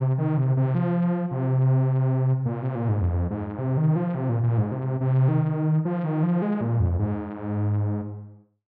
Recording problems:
none

